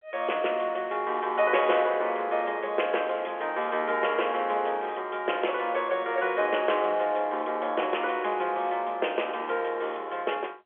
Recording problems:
phone line; 320 Hz to 3.4 kHz, G.711

